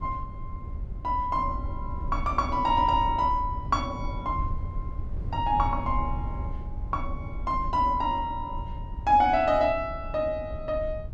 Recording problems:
rumble; below 88 Hz, SNR 9 dB

